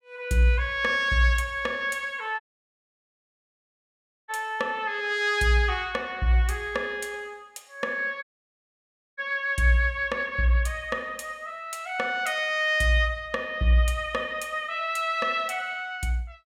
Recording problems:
audio cutting out; at 2.5 s for 2 s and at 8 s for 1 s

